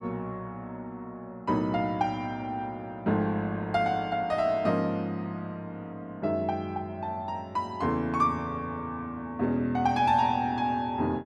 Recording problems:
none

